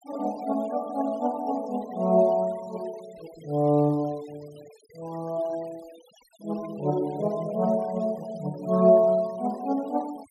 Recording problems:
denoising artefacts; signal-to-artefact ratio 25 dB

